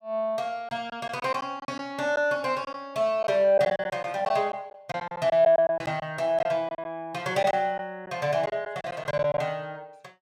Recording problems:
packet loss; 9% of the sound replaced, filled with silence

